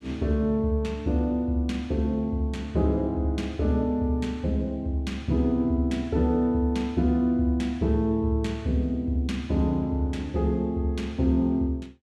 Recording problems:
none

